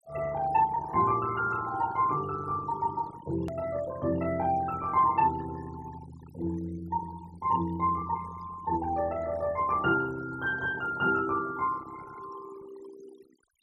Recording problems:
noise reduction artefacts; signal-to-artefact ratio 19 dB
hard cut with a click; at 3.5 s

